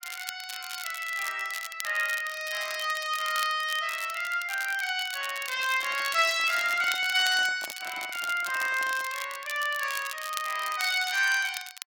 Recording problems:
crackle; vinyl, SNR 11 dB
microphone handling noise; from 5.5 to 9 s; peak -10 dB vs average level

